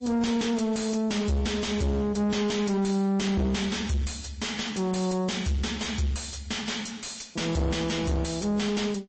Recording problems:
lossy codec; MP3, log-spectral distance 4 dB, nothing above 8.2 kHz
distorted audio; soft clipping, signal-to-distortion ratio 5 dB

